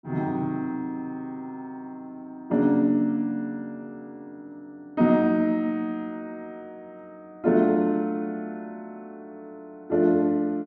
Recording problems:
none

